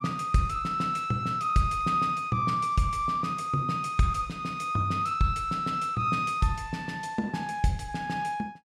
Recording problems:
none

